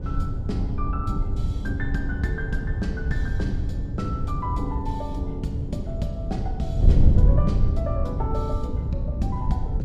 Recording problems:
wind on the microphone; below 100 Hz, SNR -6 dB

